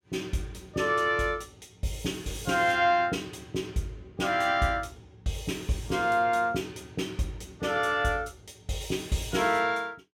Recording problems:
none

